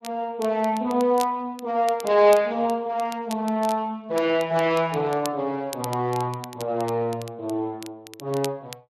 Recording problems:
codec artefacts; Speex, log-spectral distance 2 dB
crackling; vinyl, SNR 18 dB

